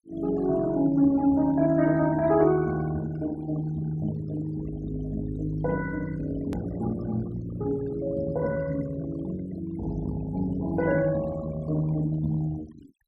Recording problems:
noise reduction artefacts; signal-to-artefact ratio 18 dB
click at an edit; at 6.5 s

